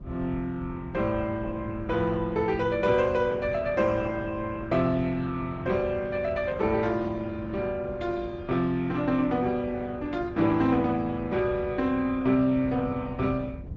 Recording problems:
treble missing; nothing above 8 kHz
codec artefacts; MP3, then Opus, log-spectral distance 2 dB
low-frequency rumble; below 120 Hz, SNR 11 dB

